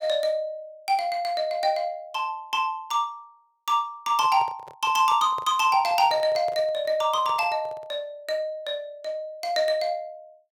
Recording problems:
microphone handling noise; from 4 to 8 s; peak -11 dB vs average level

